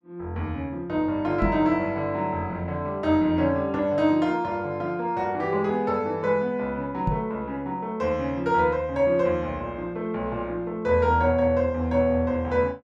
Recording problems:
microphone bump; at 1.5 s and at 7 s; peak +2 dB vs average level

